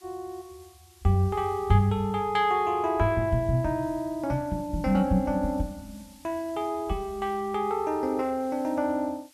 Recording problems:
hiss; SNR 27 dB

